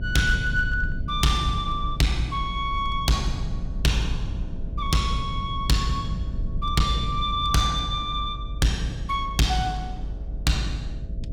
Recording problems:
distortion; hard clipping, uneven, signal-to-distortion ratio 10 dB
electrical hum; 60 Hz, harmonics up to 660 Hz, SNR 20 dB
rumble; below 88 Hz, SNR 7 dB

